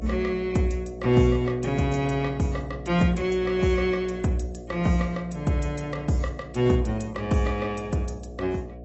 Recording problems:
codec artefacts; AAC, log-spectral distance 3 dB, nothing above 7.8 kHz
electrical hum; 60 Hz, harmonics up to 720 Hz, SNR 14 dB

